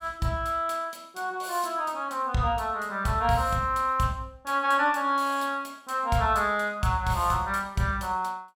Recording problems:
none

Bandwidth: 17.5 kHz